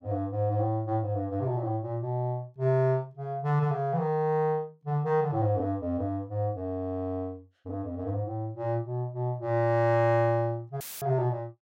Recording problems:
dropout; at 11 s; filled with static

